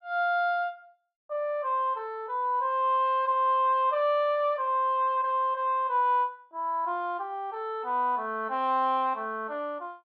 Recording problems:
none

